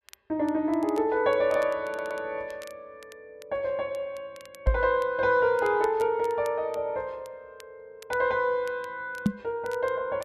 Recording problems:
crackling; vinyl, SNR 26 dB
stutter; at 2 s
knock on the microphone; at 4.5 s and at 9.5 s; peak +7 dB vs average level

